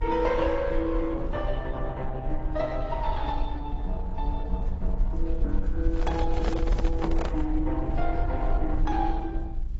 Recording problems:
codec artefacts; Opus, then AAC, log-spectral distance 2 dB, nothing above 7.6 kHz
hum; 60 Hz, harmonics up to 360 Hz, SNR 16 dB
rumble; below 50 Hz, SNR 1 dB
handling noise; from 6 to 7.5 s; peak +2 dB vs average level

